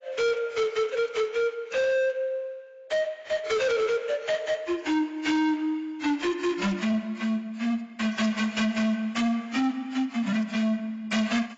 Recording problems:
lossy codec; AAC, log-spectral distance 3 dB, nothing above 7.6 kHz
distorted audio; hard clipping, signal-to-distortion ratio 7 dB

